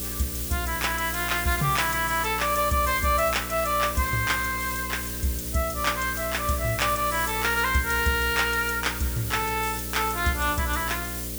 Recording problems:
electrical hum; 60 Hz, harmonics up to 600 Hz, SNR 12 dB
background hiss; slope +2 dB per octave, SNR 6 dB

